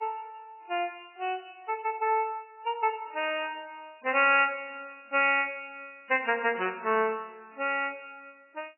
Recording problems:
lossy compression; MP3, log-spectral distance 5 dB, nothing above 2.6 kHz

